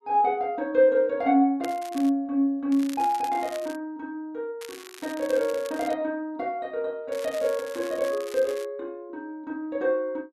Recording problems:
crackling; 4 times, first at 1.5 s; loose cable, SNR 18 dB

